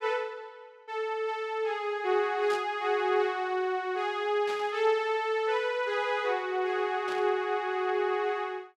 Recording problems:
static burst; at 2.5 s, at 4.5 s and at 7 s; peak -9 dB vs average level

